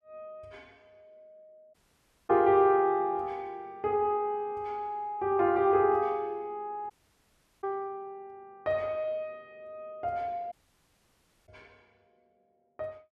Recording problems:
audio cutting out; at 1.5 s for 0.5 s, at 7 s for 0.5 s and at 11 s for 1 s

